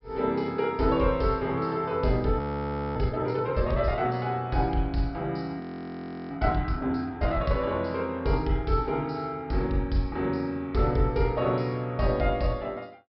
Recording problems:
treble missing; nothing above 5.5 kHz
frozen audio; at 2.5 s for 0.5 s and at 5.5 s for 0.5 s

